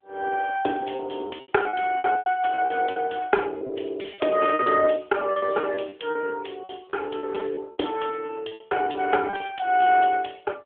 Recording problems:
telephone audio; 260 Hz to 3.4 kHz, AMR-NB
packet loss; 15% of the sound replaced, filled with repeated pitch periods

